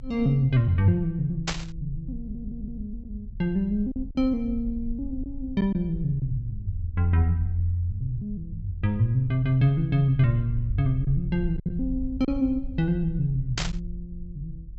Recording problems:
treble cut off; nothing above 7.9 kHz
low-frequency rumble; below 56 Hz, SNR 12 dB
lost packets; 1.9% of the sound replaced, filled with silence
static burst; at 1.5 s and at 14 s; peak +2 dB vs average level
audio stuttering; at 2 s

